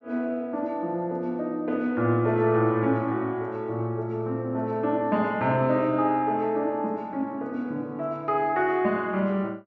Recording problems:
none

